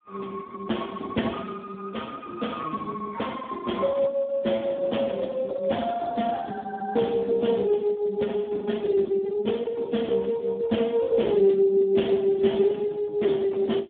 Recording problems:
phone line; 220 Hz to 3.5 kHz, Speex

